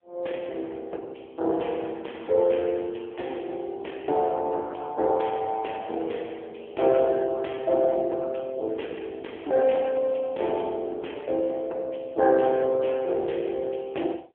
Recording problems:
phone line; 300 Hz to 3.3 kHz, AMR-NB

